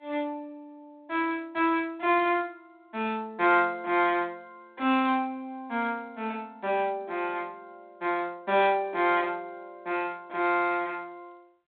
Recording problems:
telephone audio; 190 Hz to 3.8 kHz, G.726

